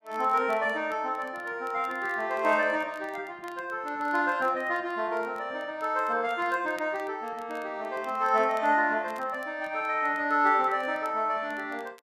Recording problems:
crackle; vinyl, SNR 28 dB

